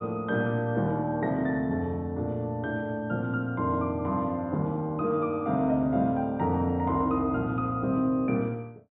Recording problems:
treble cut off; nothing above 4 kHz

